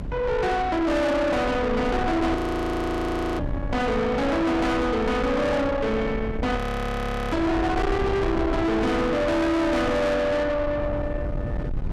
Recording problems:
distortion; soft clipping, signal-to-distortion ratio 7 dB
low-frequency rumble; below 590 Hz, SNR 6 dB
frozen audio; at 2.5 s for 1 s and at 6.5 s for 1 s

